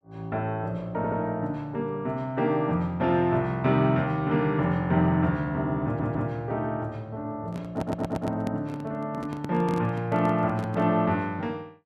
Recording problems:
stutter; at 1 s, at 6 s and at 7.5 s
microphone handling noise; from 7.5 to 11 s; peak -3 dB vs average level

